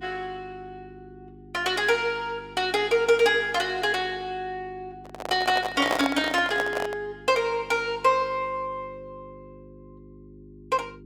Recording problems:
mains hum; 50 Hz, harmonics up to 400 Hz, SNR 22 dB
microphone handling noise; from 5 to 7 s; peak +3 dB vs average level

